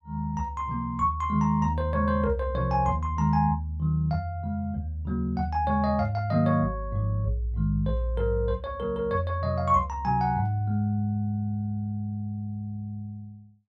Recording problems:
none

